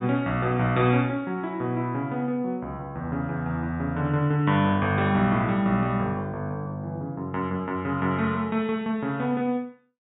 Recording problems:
low-pass filter; nothing above 4 kHz

